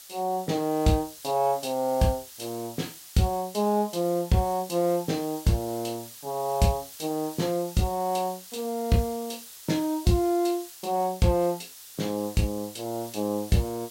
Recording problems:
hiss; slope +3 dB per octave, SNR 15 dB

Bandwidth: 16 kHz